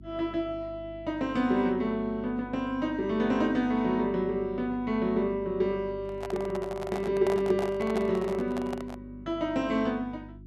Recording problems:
hum; 50 Hz, harmonics up to 350 Hz, SNR 19 dB
handling noise; from 6 to 9 s; peak -3 dB vs average level

